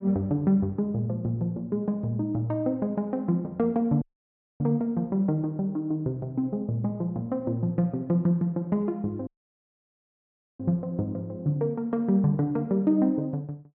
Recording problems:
dropout; at 4 s for 0.5 s and at 9.5 s for 1.5 s

